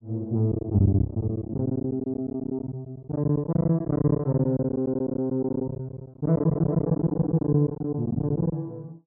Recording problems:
lost packets; 17% of the sound replaced, filled with silence

